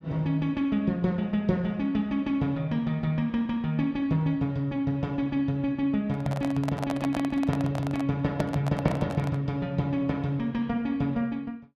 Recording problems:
handling noise; from 6 to 9.5 s; peak -1 dB vs average level

